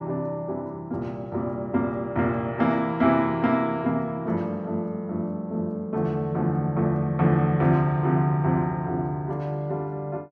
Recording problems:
none

